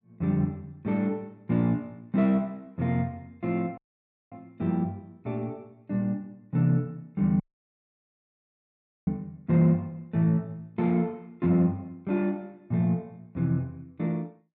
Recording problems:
dropout; at 4 s for 0.5 s and at 7.5 s for 1.5 s

